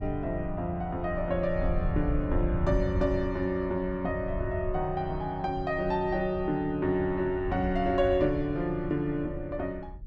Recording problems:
rumble; below 96 Hz, SNR 8 dB

